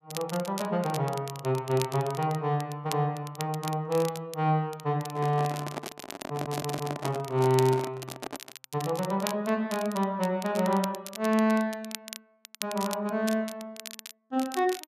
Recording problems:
crackle; vinyl, SNR 13 dB
microphone handling noise; from 5 to 8.5 s; peak -2 dB vs average level
stutter; at 6.5 s

